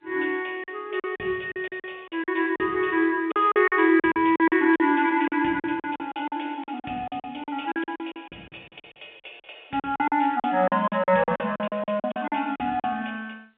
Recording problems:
telephone audio; 240 Hz to 3.6 kHz, G.711
packet loss; 17% of the sound replaced, filled with silence

